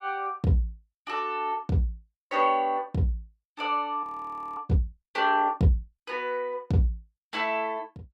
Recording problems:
frozen audio; at 4 s for 0.5 s

